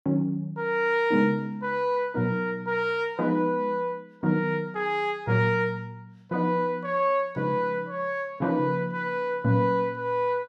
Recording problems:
none

